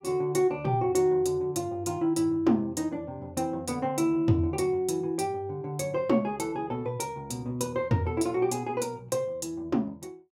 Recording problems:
none

